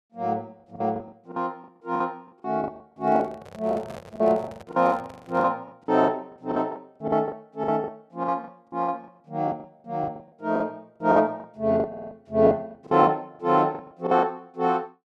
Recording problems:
lost packets; 16% of the sound replaced, filled with the last packet
handling noise; from 3 to 5.5 s; peak -10 dB vs average level
stutter; at 12 s

